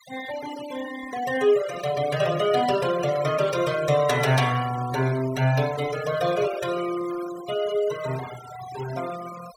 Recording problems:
denoising artefacts; signal-to-artefact ratio 14 dB

